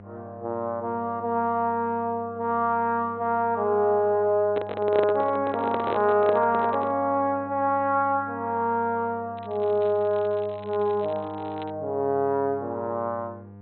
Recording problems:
treble cut off; nothing above 4.1 kHz
hum; 50 Hz, harmonics up to 1.2 kHz, SNR 20 dB
microphone handling noise; from 4.5 to 7 s; peak 0 dB vs average level
crackle; from 9.5 to 12 s; loose cable, SNR 27 dB

